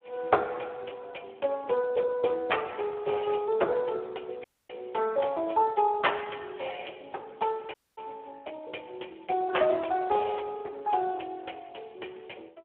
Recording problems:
telephone audio; 300 Hz to 3.4 kHz, Speex
audio cutting out; at 4.5 s and at 7.5 s

